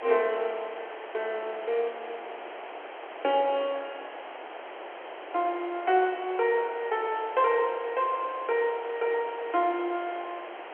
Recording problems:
phone line; 300 Hz to 3.3 kHz, G.711
hiss; SNR 12 dB

